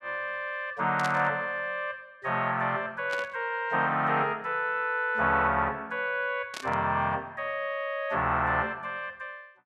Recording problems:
static burst; at 1 s, at 3 s and at 6.5 s; peak -4 dB vs average level

